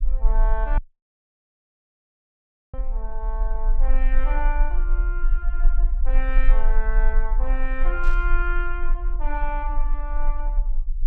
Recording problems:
low-frequency rumble; below 36 Hz, strongest tone 20 Hz, SNR -7 dB
dropout; at 1 s for 2 s
burst of static; at 8 s; peak -11 dB vs average level

